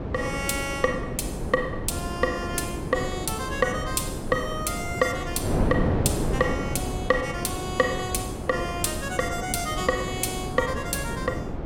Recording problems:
wind noise; below 420 Hz, SNR 3 dB

